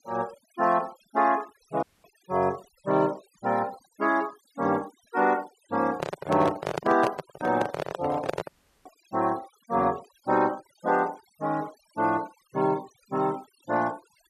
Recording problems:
denoising artefacts; signal-to-artefact ratio 21 dB
dropout; at 2 s and at 8.5 s
microphone handling noise; from 6 to 8.5 s; peak +3 dB vs average level

